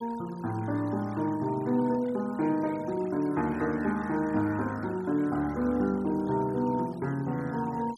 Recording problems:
denoising artefacts; signal-to-artefact ratio 23 dB

